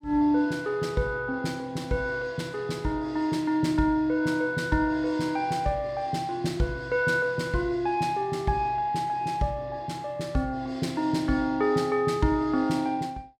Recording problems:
none

